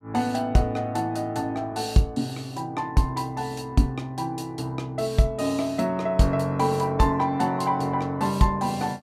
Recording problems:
none

